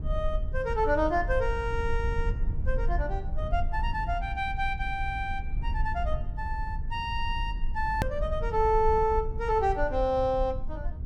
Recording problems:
rumble; below 66 Hz, SNR 4 dB
click at an edit; at 8 s

